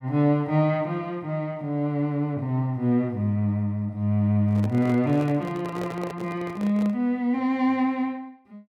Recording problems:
handling noise; from 4.5 to 7 s; peak -8 dB vs average level

